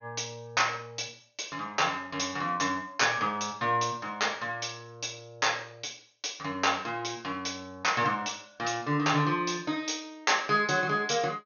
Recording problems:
low-pass filter; nothing above 6.6 kHz

